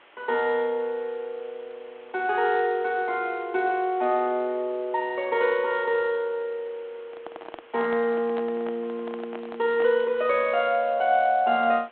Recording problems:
phone line; 280 Hz to 3.7 kHz, G.726
background hiss; SNR 27 dB
handling noise; from 7 to 10 s; peak -9 dB vs average level

